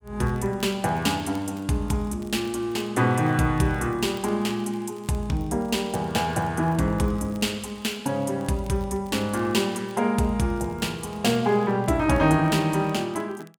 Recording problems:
crackling; vinyl, SNR 30 dB

